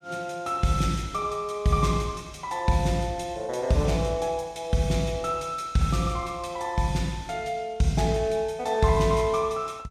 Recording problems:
none

